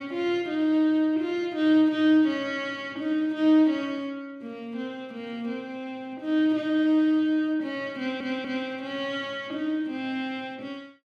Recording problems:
audio stuttering; at 8 s

